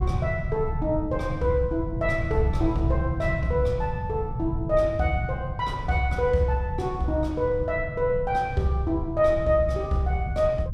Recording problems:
low-frequency rumble; below 140 Hz, SNR 6 dB

